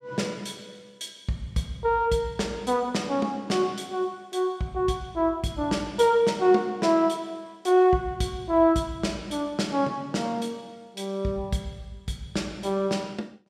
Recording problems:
none

